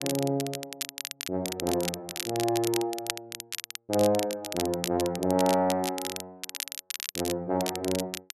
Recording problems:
crackling; vinyl, SNR 6 dB

